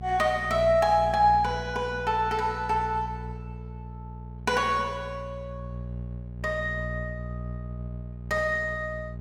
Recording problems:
hum; 60 Hz, harmonics up to 600 Hz, SNR 11 dB

